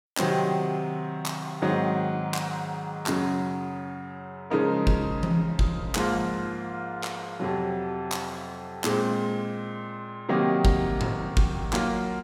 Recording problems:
none

